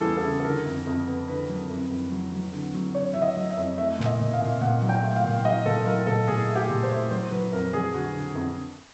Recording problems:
low-pass filter; nothing above 8 kHz
background hiss; slope -1 dB per octave, SNR 21 dB
burst of static; at 4 s; peak -7 dB vs average level

